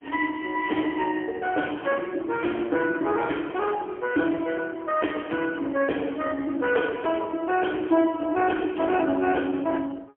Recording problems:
phone line; 240 Hz to 3.2 kHz, AMR-NB, then MP3

